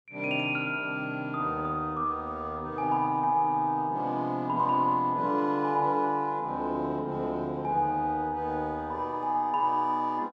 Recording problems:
none

